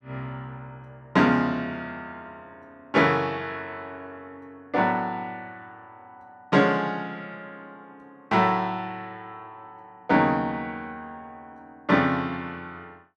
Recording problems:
none

